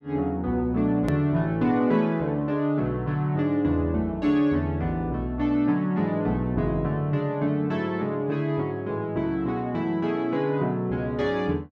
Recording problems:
edit click; at 1 s

